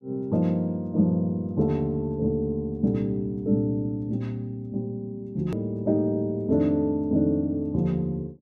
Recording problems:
edit click; at 5.5 s

